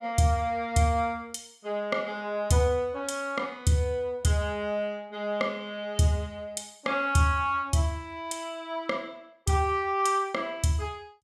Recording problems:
none

